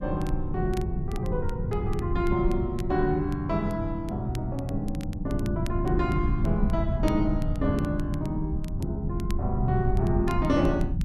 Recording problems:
rumble; below 150 Hz, SNR 2 dB
crackle; vinyl, SNR 22 dB

